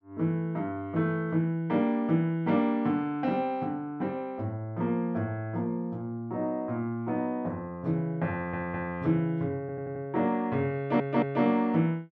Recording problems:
stutter; at 8.5 s, at 9.5 s and at 11 s

